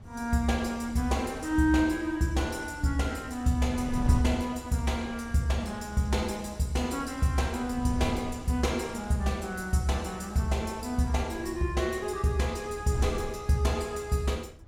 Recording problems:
wind on the microphone; below 140 Hz, SNR 14 dB

